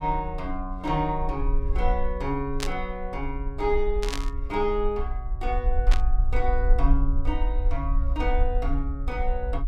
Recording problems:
low-frequency rumble; below 48 Hz, SNR 0 dB
static burst; at 2.5 s, at 4 s and at 6 s; peak +4 dB vs average level

